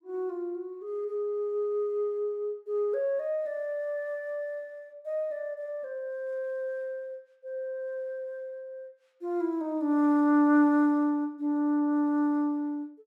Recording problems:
none

